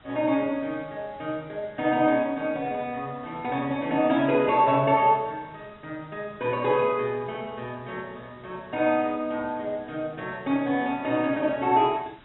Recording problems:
low-pass filter; nothing above 3.9 kHz
hiss; SNR 27 dB

